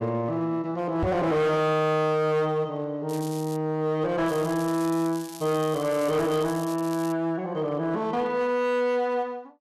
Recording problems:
distortion; hard clipping, signal-to-distortion ratio 11 dB
knock on the microphone; at 1 s; peak +1 dB vs average level
crackling; at 3 s and from 4.5 to 7 s; loose cable, SNR 17 dB

